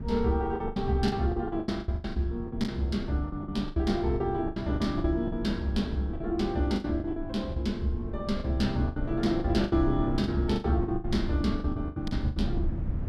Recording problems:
low-frequency rumble; below 130 Hz, SNR 8 dB
lost packets; 16% of the sound replaced, filled with the last packet

